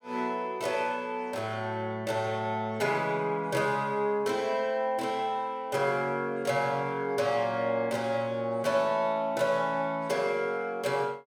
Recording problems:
none

